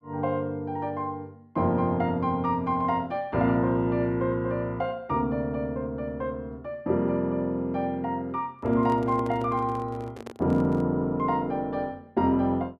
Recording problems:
microphone handling noise; from 8.5 to 11 s; peak -9 dB vs average level

